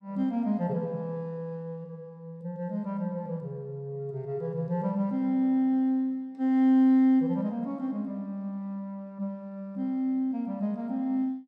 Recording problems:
none

